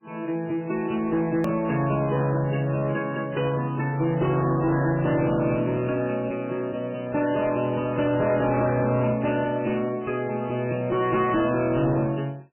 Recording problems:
lossy codec; MP3, log-spectral distance 4 dB, nothing above 2.7 kHz
distortion; soft clipping, signal-to-distortion ratio 11 dB
edit click; at 1.5 s

